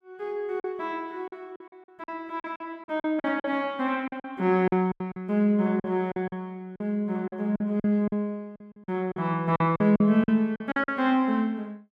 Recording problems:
packet loss; 12% of the sound replaced, filled with silence

